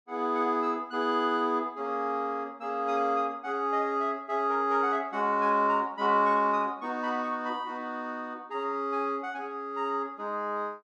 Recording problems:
none

